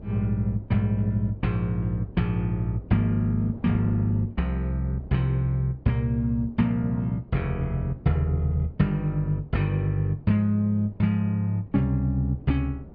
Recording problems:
treble missing; nothing above 5.5 kHz
wind on the microphone; below 320 Hz, SNR 21 dB

